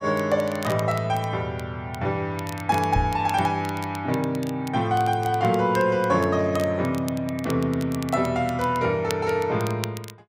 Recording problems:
crackling; vinyl, SNR 18 dB
microphone bump; at 3 s; peak +3 dB vs average level

